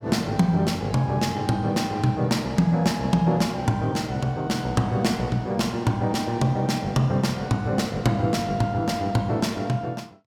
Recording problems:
none

